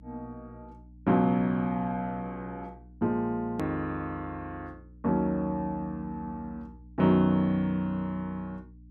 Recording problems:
hum; 60 Hz, harmonics up to 300 Hz, SNR 22 dB
edit click; at 3.5 s

